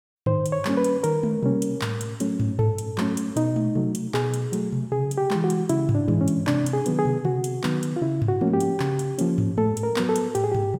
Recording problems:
none

